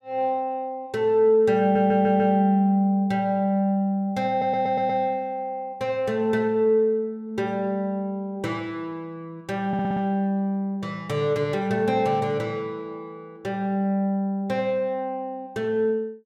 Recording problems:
audio stuttering; at 1.5 s, at 4.5 s and at 9.5 s

